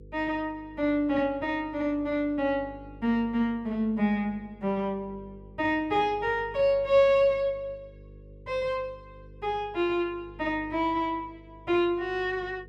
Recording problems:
hum; 50 Hz, harmonics up to 500 Hz, SNR 22 dB

